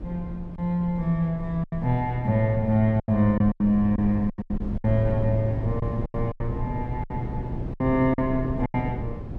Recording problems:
low-frequency rumble; below 78 Hz, SNR 14 dB
wind on the microphone; below 280 Hz, SNR 10 dB
lost packets; 10% of the sound replaced, filled with silence

